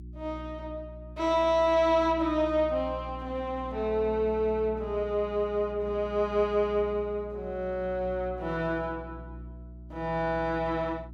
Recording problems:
hum; 60 Hz, harmonics up to 360 Hz, SNR 15 dB

